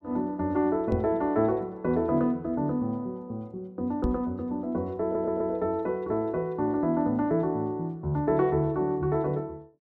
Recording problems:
microphone thump; at 1 s and at 4 s; peak +2 dB vs average level
audio stuttering; at 5 s

